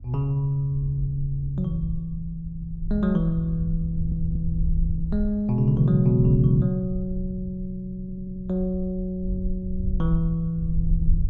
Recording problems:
rumble; below 68 Hz, SNR 7 dB
audio stuttering; at 4 s and at 8 s

